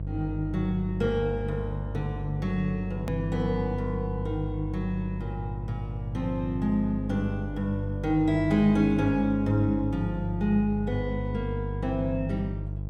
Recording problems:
electrical hum; 50 Hz, harmonics up to 500 Hz, SNR 5 dB
edit click; at 3 s

